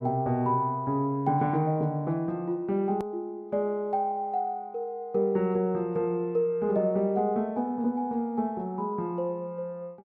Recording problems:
click at an edit; at 3 s

